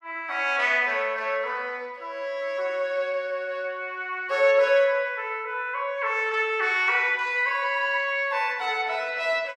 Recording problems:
none

